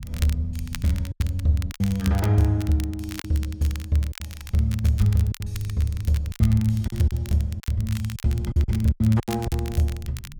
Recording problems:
low-frequency rumble; below 110 Hz, SNR 19 dB
crackle; vinyl, SNR 17 dB
lost packets; 9% of the sound replaced, filled with silence

